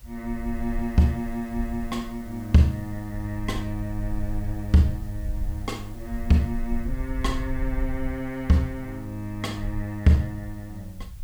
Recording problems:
background hiss; slope -1 dB per octave, SNR 26 dB
low-frequency rumble; below 56 Hz, SNR 10 dB

